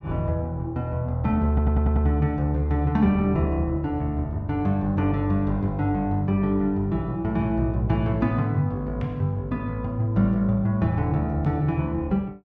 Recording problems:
audio stuttering; at 1.5 s

